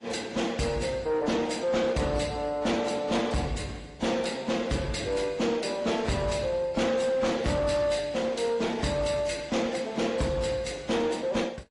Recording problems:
lossy compression; MP3, then AAC, log-spectral distance 3 dB
distorted audio; soft clipping, signal-to-distortion ratio 11 dB

